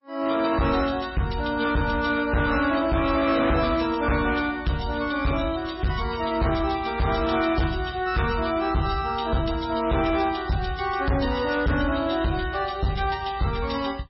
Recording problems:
lossy codec; MP3, log-spectral distance 5 dB, nothing above 5.5 kHz
distortion; hard clipping, signal-to-distortion ratio 10 dB

